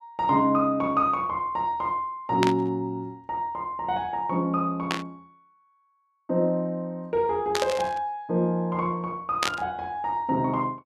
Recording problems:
burst of static; 4 times, first at 2.5 s; peak +4 dB vs average level

